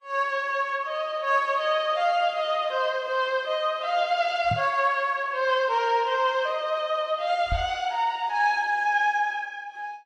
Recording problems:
lossy compression; Vorbis, log-spectral distance 2 dB
knock on the microphone; at 4.5 s and at 7.5 s; peak 0 dB vs average level

